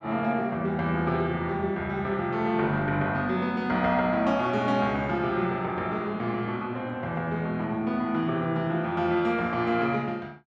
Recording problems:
none

